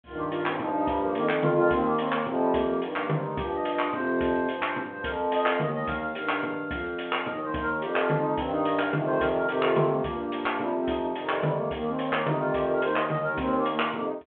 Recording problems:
telephone audio; 220 Hz to 3.4 kHz, G.726

